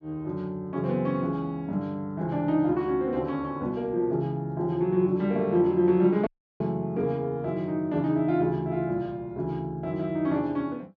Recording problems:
treble cut off; nothing above 8 kHz
dropout; at 6.5 s

